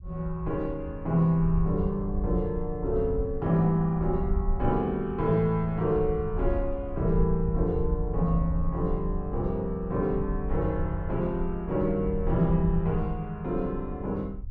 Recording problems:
rumble; below 70 Hz, SNR 7 dB

